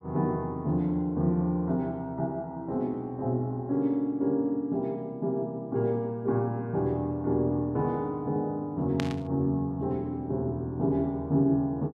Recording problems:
static burst; at 9 s; peak -2 dB vs average level

